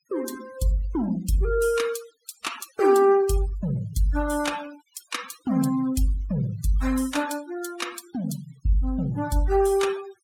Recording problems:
denoising artefacts; signal-to-artefact ratio 19 dB

